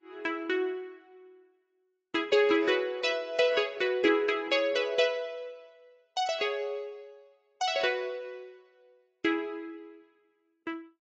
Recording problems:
codec artefacts; AAC, log-spectral distance 2 dB

